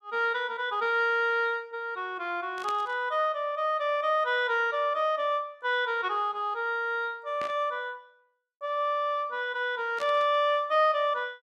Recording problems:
burst of static; at 2.5 s, at 7.5 s and at 10 s; peak -9 dB vs average level

